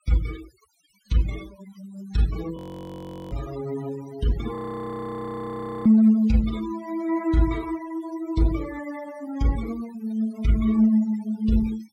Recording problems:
noise reduction artefacts; signal-to-artefact ratio 18 dB
audio freezing; at 2.5 s for 1 s and at 4.5 s for 1.5 s

